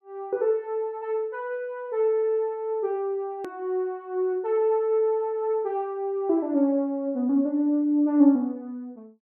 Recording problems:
hard cut with a click; at 3.5 s

